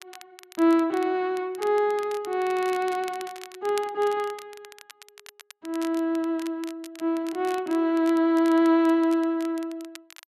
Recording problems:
crackle; vinyl, SNR 21 dB

